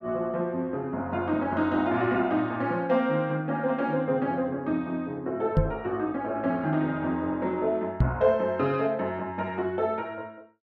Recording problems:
microphone thump; at 5.5 s and at 8 s; peak +8 dB vs average level

